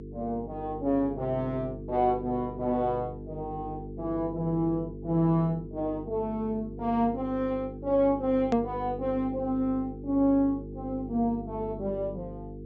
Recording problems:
treble cut off; nothing above 8 kHz
electrical hum; 50 Hz, harmonics up to 450 Hz, SNR 11 dB
hard cut with a click; at 8.5 s

